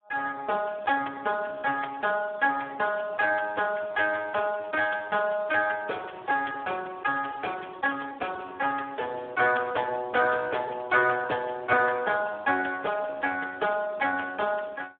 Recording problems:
telephone audio; 320 Hz to 3.4 kHz, Speex

